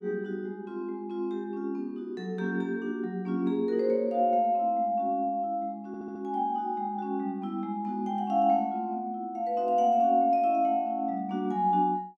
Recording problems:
stutter; at 6 s

